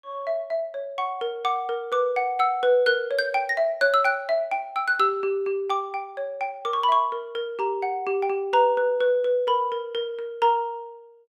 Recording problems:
none

